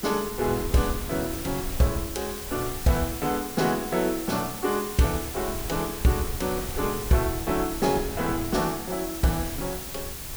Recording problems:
hiss; slope 0 dB per octave, SNR 8 dB
wind noise; below 130 Hz, SNR 12 dB

